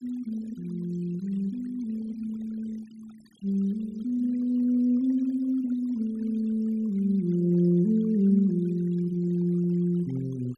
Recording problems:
noise reduction artefacts; signal-to-artefact ratio 28 dB

